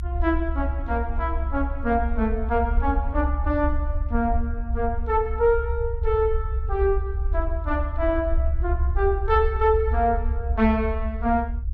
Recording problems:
rumble; below 68 Hz, SNR 2 dB

